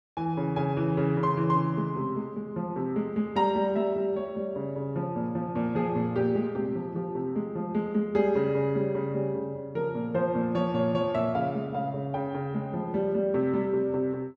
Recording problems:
none

